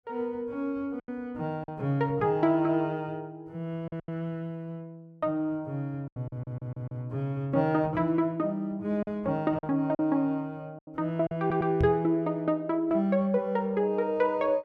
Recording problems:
packet loss; 4% of the sound replaced, filled with silence
stutter; at 6.5 s and at 11 s
microphone thump; at 12 s; peak +4 dB vs average level

